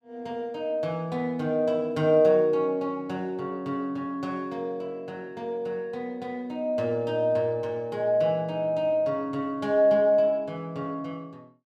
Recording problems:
none

